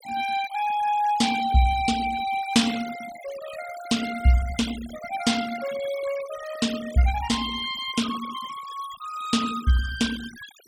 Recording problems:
denoising artefacts; signal-to-artefact ratio 14 dB

